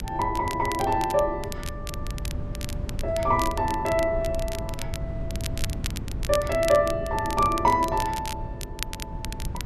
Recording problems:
hum; 50 Hz, harmonics up to 600 Hz, SNR 21 dB
wind on the microphone; below 130 Hz, SNR 10 dB
crackle; vinyl, SNR 14 dB

